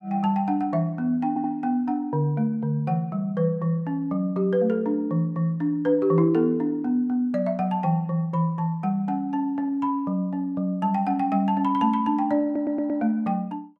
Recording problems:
stutter; at 1.5 s and at 12 s

